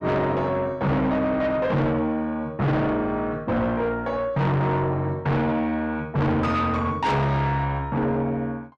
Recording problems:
distorted audio; soft clipping, signal-to-distortion ratio 6 dB

